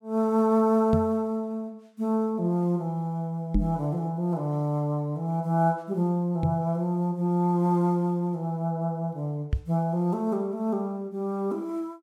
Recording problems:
microphone bump; 4 times, first at 1 s; peak +5 dB vs average level

